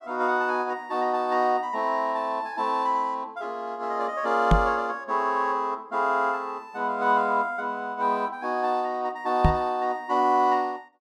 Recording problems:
microphone thump; at 4.5 s and at 9.5 s; peak +8 dB vs average level

